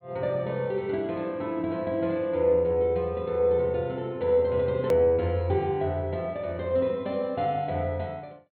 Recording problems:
treble cut off; nothing above 4.2 kHz
edit click; at 5 s

